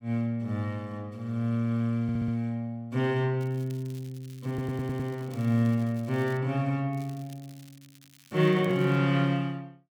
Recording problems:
audio stuttering; at 2 s and at 4.5 s
crackling; from 3.5 to 6.5 s and from 7 to 9 s; loose cable, SNR 26 dB

